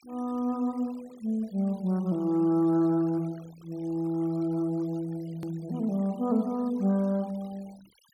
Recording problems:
denoising artefacts; signal-to-artefact ratio 27 dB
click at an edit; at 5.5 s

